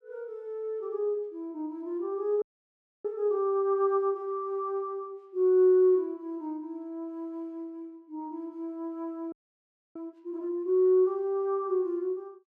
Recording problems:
frozen audio; at 2.5 s for 0.5 s and at 9.5 s for 0.5 s

